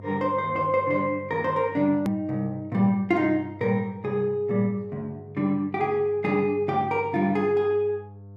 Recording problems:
hum; 50 Hz, harmonics up to 700 Hz, SNR 19 dB
edit click; at 2 s

